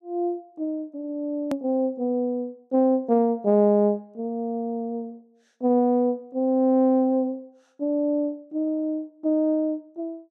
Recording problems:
edit click; at 1.5 s

